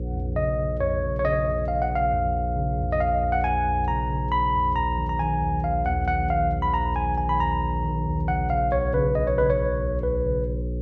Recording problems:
electrical hum; 60 Hz, harmonics up to 540 Hz, SNR 4 dB

